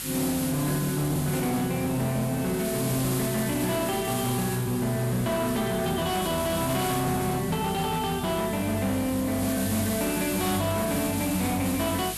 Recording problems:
distorted audio; hard clipping, signal-to-distortion ratio 10 dB
electrical hum; 50 Hz, harmonics up to 550 Hz, SNR 17 dB
background hiss; slope +2 dB per octave, SNR 8 dB

